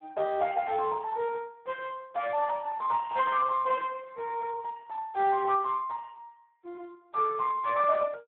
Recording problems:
phone line; 110 Hz to 2.8 kHz, Speex

